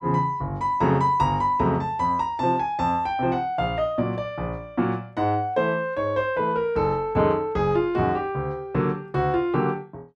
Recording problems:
none

